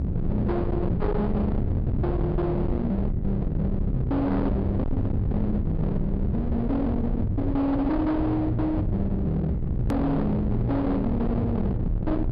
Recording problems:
treble cut off; nothing above 5.1 kHz
distorted audio; hard clipping, uneven, signal-to-distortion ratio 6 dB
electrical hum; 60 Hz, harmonics up to 600 Hz, SNR 9 dB
rumble; below 190 Hz, SNR 3 dB
hard cut with a click; at 10 s

